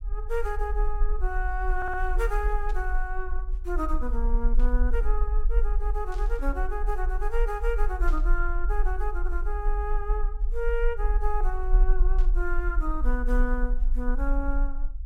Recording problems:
low-frequency rumble; below 40 Hz, SNR -4 dB
audio stuttering; at 2 s
burst of static; 5 times, first at 2.5 s; peak -13 dB vs average level

